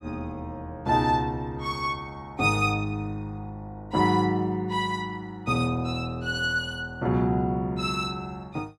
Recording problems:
none

